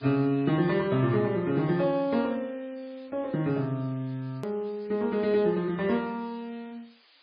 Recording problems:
lossy codec; MP3, log-spectral distance 6 dB, nothing above 13.1 kHz
hiss; SNR 28 dB
edit click; at 4.5 s

